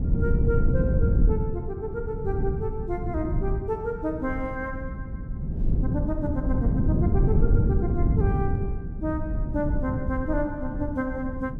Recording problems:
wind noise; below 140 Hz, SNR -4 dB

